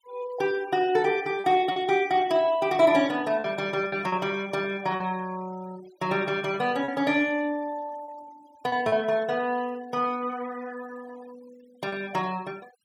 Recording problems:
denoising artefacts; signal-to-artefact ratio 23 dB
packet loss; 4% of the sound replaced, filled with repeated pitch periods

